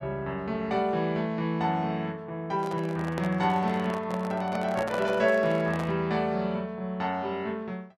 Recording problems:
handling noise; from 2.5 to 6 s; peak -3 dB vs average level

